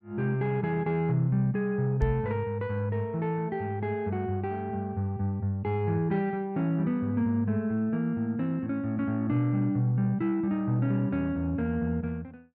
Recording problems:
microphone thump; at 2 s; peak +4 dB vs average level

